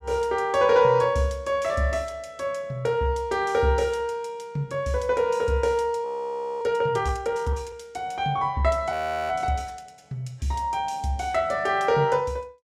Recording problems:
frozen audio; at 6 s for 0.5 s and at 9 s

